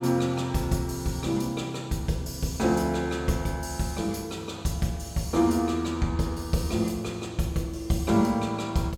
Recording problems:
none

